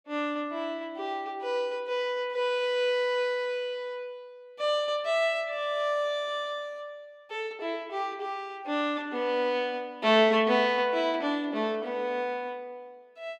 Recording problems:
none

